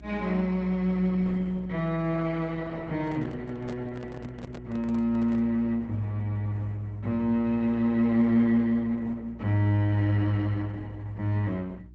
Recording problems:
codec artefacts; Opus, log-spectral distance 2 dB
hum; 60 Hz, harmonics up to 360 Hz, SNR 21 dB
microphone handling noise; from 3 to 5.5 s; peak -10 dB vs average level

